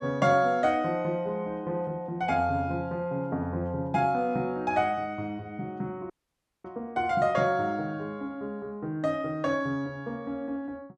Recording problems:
dropout; at 6 s for 0.5 s

